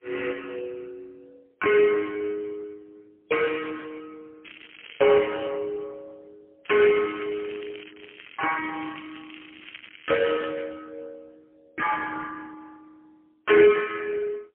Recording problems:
telephone audio; 340 Hz to 3.2 kHz, AMR-NB, then MP3
crackling; from 4.5 to 5.5 s and from 6.5 to 10 s; loose cable, SNR 19 dB

